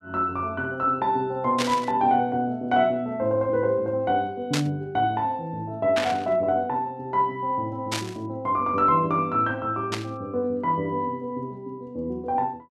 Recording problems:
burst of static; 5 times, first at 1.5 s; peak +2 dB vs average level

